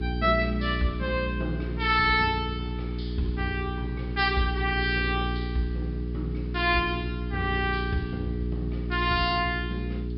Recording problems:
treble missing; nothing above 5.2 kHz
electrical hum; 60 Hz, harmonics up to 420 Hz, SNR 4 dB
hiss; SNR 29 dB

